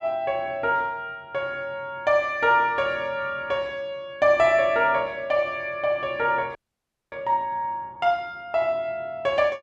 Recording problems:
audio freezing; at 6.5 s for 0.5 s

